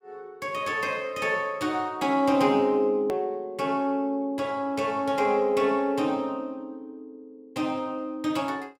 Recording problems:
hard cut with a click; at 3 s

